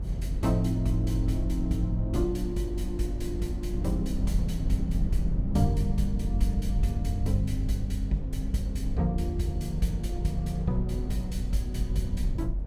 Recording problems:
rumble; below 64 Hz, strongest tone 46 Hz, SNR 2 dB
wind noise; below 360 Hz, SNR 14 dB

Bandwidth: 17.5 kHz